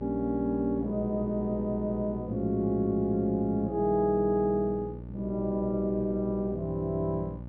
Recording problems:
electrical hum; 60 Hz, harmonics up to 900 Hz, SNR 12 dB

